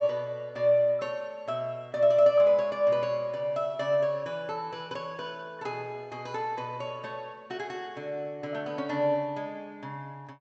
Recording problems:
treble missing; nothing above 8 kHz

